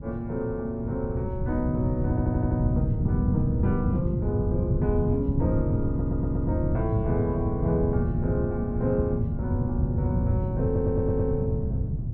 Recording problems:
wind on the microphone; below 160 Hz, SNR -2 dB
stutter; at 2 s, at 6 s and at 11 s

